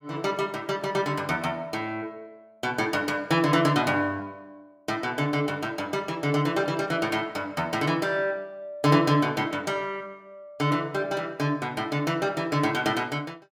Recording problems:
none

